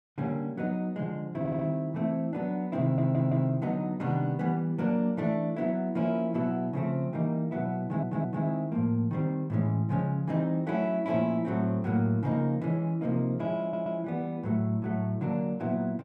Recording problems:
audio stuttering; 4 times, first at 1.5 s

